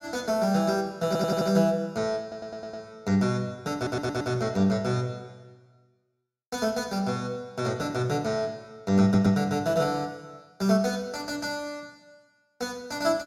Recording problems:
stutter; 4 times, first at 1 s

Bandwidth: 16.5 kHz